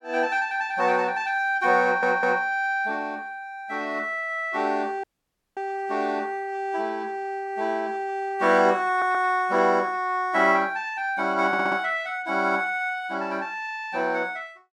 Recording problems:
stutter; at 2 s, at 9 s and at 11 s
audio cutting out; at 5 s for 0.5 s

